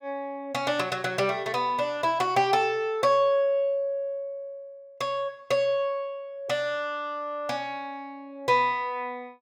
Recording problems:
none

